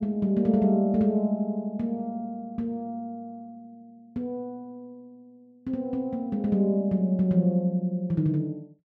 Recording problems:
none

